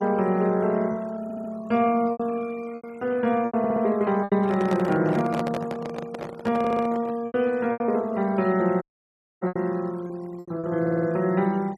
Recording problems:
denoising artefacts; signal-to-artefact ratio 24 dB
lost packets; 7% of the sound replaced, filled with repeated pitch periods
audio stuttering; 4 times, first at 1 s
microphone handling noise; from 4.5 to 7 s; peak -2 dB vs average level
audio cutting out; at 9 s for 0.5 s

